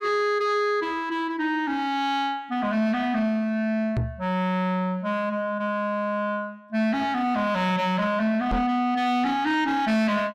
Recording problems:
distortion; soft clipping, signal-to-distortion ratio 10 dB
microphone thump; at 4 s and at 8.5 s; peak +2 dB vs average level

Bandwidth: 15.5 kHz